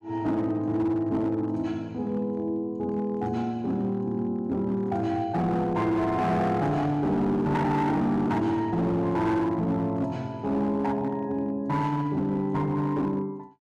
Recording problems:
distorted audio; hard clipping, signal-to-distortion ratio 11 dB

